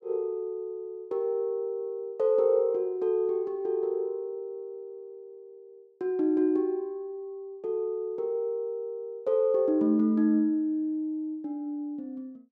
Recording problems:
none

